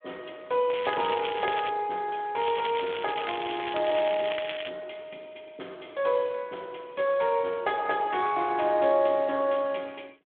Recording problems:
telephone audio; 280 Hz to 3.6 kHz, Speex
crackle; at 0.5 s and from 2.5 to 4.5 s; loose cable, SNR 9 dB

